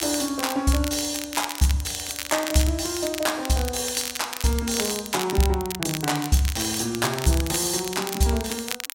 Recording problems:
crackle; vinyl, SNR 8 dB

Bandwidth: 16 kHz